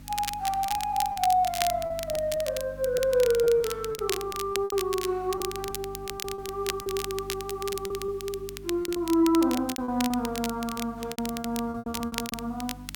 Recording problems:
electrical hum; 50 Hz, harmonics up to 300 Hz, SNR 18 dB
hiss; SNR 30 dB
crackling; vinyl, SNR 9 dB
packet loss; 12% of the sound replaced, filled with repeated pitch periods

